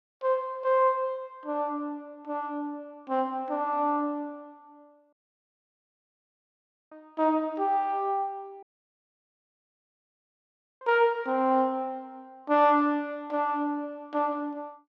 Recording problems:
audio cutting out; at 5 s for 2 s and at 8.5 s for 2 s

